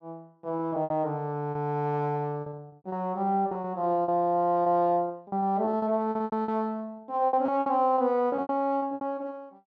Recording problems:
lost packets; 15% of the sound replaced, filled with repeated pitch periods

